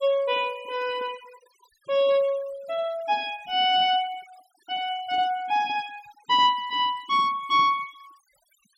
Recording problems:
noise reduction artefacts; signal-to-artefact ratio 24 dB

